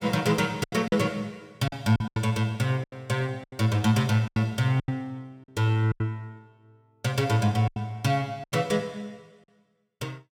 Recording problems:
lost packets; 10% of the sound replaced, filled with silence

